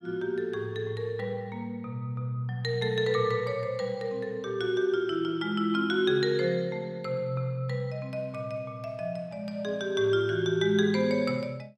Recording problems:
none

